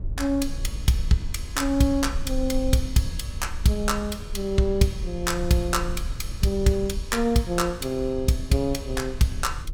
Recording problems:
low-frequency rumble; below 64 Hz, SNR 9 dB

